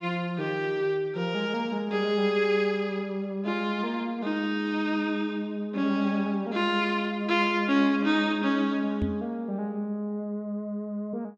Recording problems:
microphone thump; at 9 s; peak +1 dB vs average level

